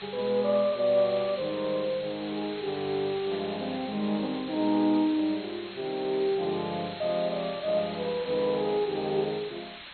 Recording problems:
lossy compression; MP2, log-spectral distance 16 dB, nothing above 4.1 kHz
background hiss; SNR 13 dB

